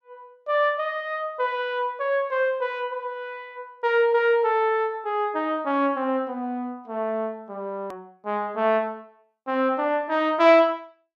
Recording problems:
hard cut with a click; at 8 s

